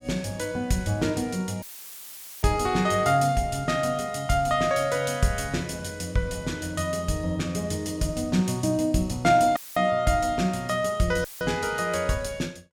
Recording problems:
audio cutting out; at 1.5 s for 1 s, at 9.5 s and at 11 s; filled with static

